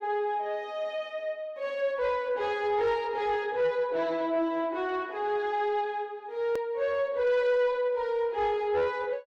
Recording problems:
distorted audio; soft clipping, signal-to-distortion ratio 12 dB
hard cut with a click; at 6.5 s

